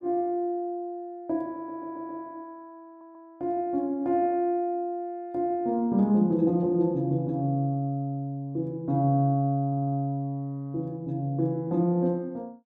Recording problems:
audio stuttering; at 1.5 s, at 3 s and at 9.5 s

